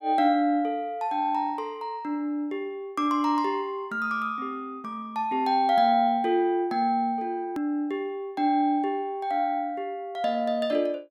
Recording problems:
edit click; at 7.5 s

